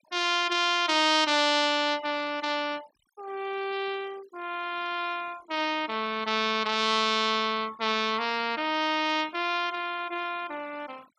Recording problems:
noise reduction artefacts; signal-to-artefact ratio 22 dB

